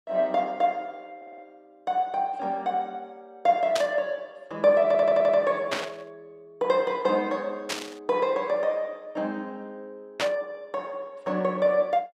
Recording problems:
stutter; at 1 s and at 5 s
burst of static; 4 times, first at 4 s; peak +2 dB vs average level

